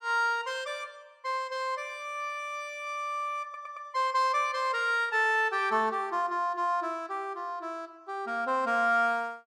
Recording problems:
audio stuttering; at 3.5 s

